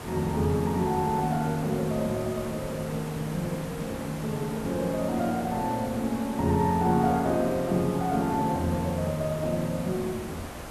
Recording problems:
hiss; slope -6 dB per octave, SNR 11 dB

